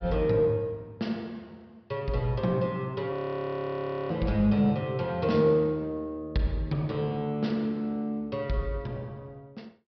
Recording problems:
treble cut off; nothing above 5.5 kHz
audio freezing; at 3 s for 1 s

